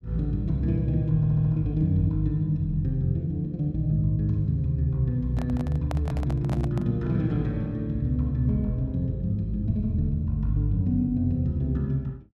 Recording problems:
stutter; at 1 s
handling noise; from 5.5 to 7 s; peak -5 dB vs average level

